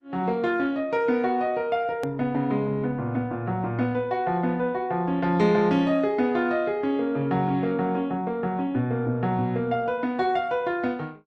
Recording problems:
codec artefacts; Opus, log-spectral distance 2 dB, nothing above 13.1 kHz
click at an edit; at 2 s

